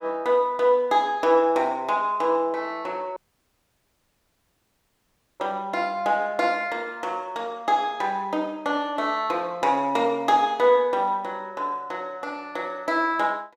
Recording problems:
dropout; at 3 s for 2 s

